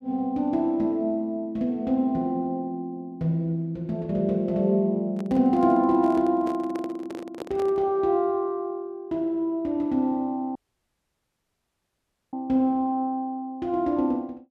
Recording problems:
handling noise; from 5 to 8 s; peak -5 dB vs average level
dropout; at 11 s for 2 s

